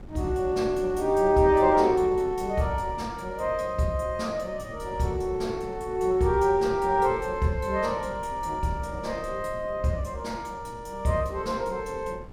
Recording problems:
wind on the microphone; below 250 Hz, SNR 17 dB

